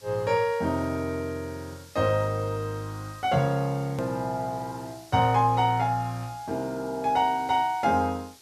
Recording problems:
background hiss; SNR 23 dB
hard cut with a click; at 4 s

